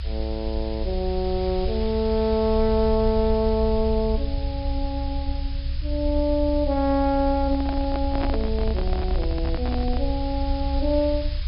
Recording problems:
treble cut off; nothing above 5.5 kHz
hiss; SNR 16 dB
rumble; below 66 Hz, SNR 4 dB
microphone handling noise; from 7.5 to 10 s; peak -1 dB vs average level

